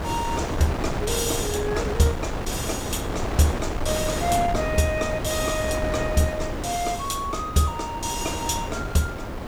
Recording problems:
background hiss; slope +2 dB per octave, SNR 29 dB
wind on the microphone; below 730 Hz, SNR 4 dB

